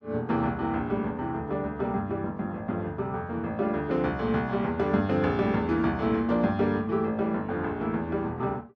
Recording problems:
none

